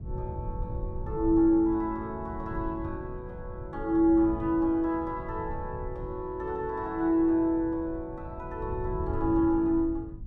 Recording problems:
low-frequency rumble; below 120 Hz, SNR 12 dB

